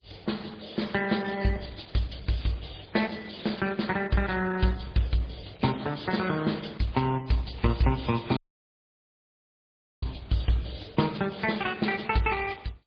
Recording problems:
lossy compression; MP3, then Opus, log-spectral distance 9 dB, nothing above 4.6 kHz
crackle; from 1.5 to 3 s, from 5.5 to 7 s and from 7 to 8 s; loose cable, SNR 27 dB
audio cutting out; at 8.5 s for 1.5 s

